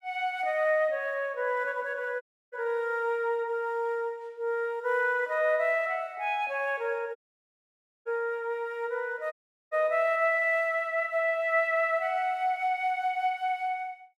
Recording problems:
dropout; at 2 s, at 7 s for 1 s and at 9.5 s

